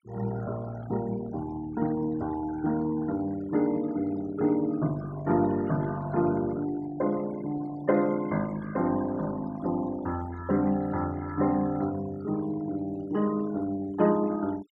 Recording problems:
noise reduction artefacts; signal-to-artefact ratio 18 dB

